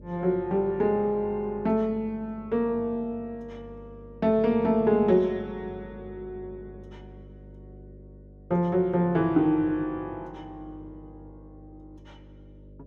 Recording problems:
hum; 50 Hz, harmonics up to 600 Hz, SNR 22 dB

